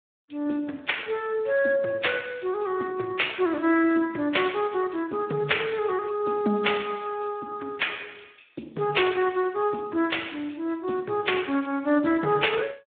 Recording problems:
phone line; 220 Hz to 3.6 kHz, Speex

